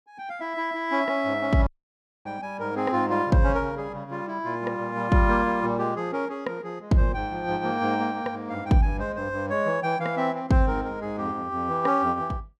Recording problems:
audio cutting out; at 1.5 s for 0.5 s

